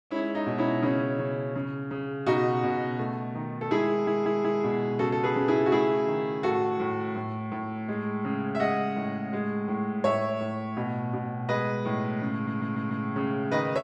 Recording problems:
audio stuttering; at 4 s and at 12 s

